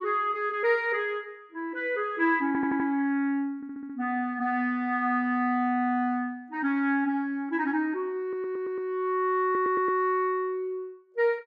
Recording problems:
audio stuttering; 4 times, first at 2.5 s

